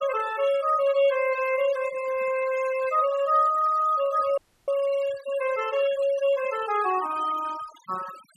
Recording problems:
denoising artefacts; signal-to-artefact ratio 16 dB
audio cutting out; at 4.5 s

